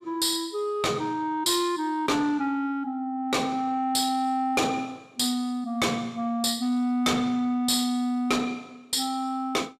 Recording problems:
distorted audio; soft clipping, signal-to-distortion ratio 10 dB

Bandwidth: 14.5 kHz